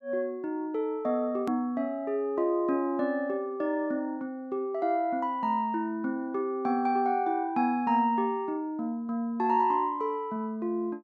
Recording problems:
hard cut with a click; at 1.5 s

